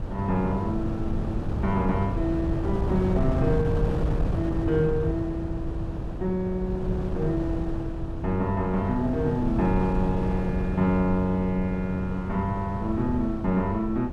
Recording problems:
wind noise; below 190 Hz, SNR 3 dB

